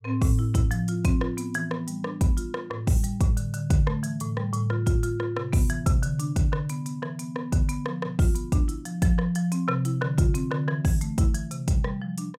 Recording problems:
none

